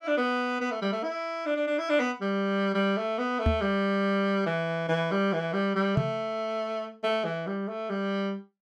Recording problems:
microphone thump; at 3.5 s and at 6 s; peak +6 dB vs average level

